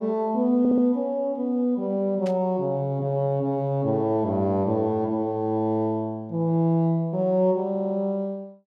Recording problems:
stutter; at 0.5 s and at 7.5 s
burst of static; at 2.5 s; peak -13 dB vs average level

